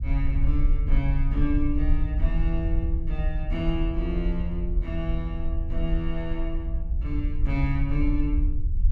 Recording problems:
low-frequency rumble; below 56 Hz, SNR -3 dB

